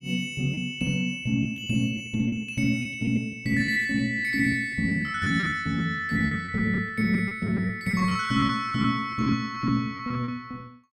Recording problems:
packet loss; 12% of the sound replaced, filled with repeated pitch periods

